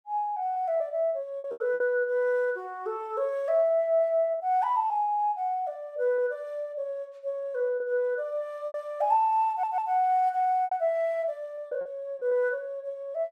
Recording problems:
packet loss; 5% of the sound replaced, filled with repeated pitch periods
audio stuttering; at 9.5 s

